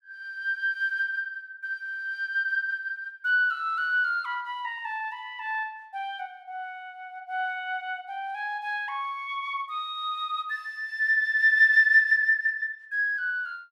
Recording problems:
none

